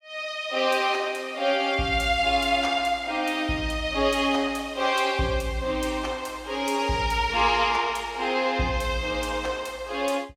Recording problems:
none

